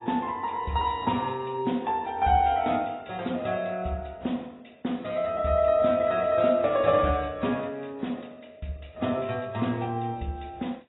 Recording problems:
codec artefacts; AAC, log-spectral distance 3 dB, nothing above 3.7 kHz

